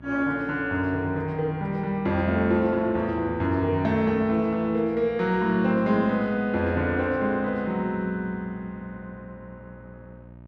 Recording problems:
hum; 60 Hz, harmonics up to 960 Hz, SNR 22 dB

